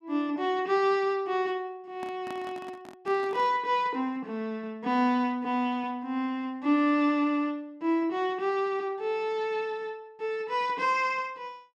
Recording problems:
microphone handling noise; from 2 to 3.5 s; peak -9 dB vs average level

